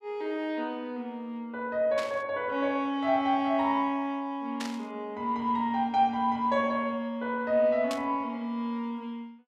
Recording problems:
static burst; at 2 s, at 4.5 s and at 8 s; peak -4 dB vs average level

